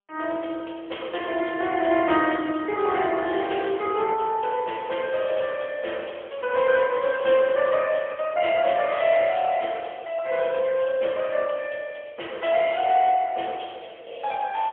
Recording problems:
phone line; 300 Hz to 3.3 kHz, AMR-NB, then MP3

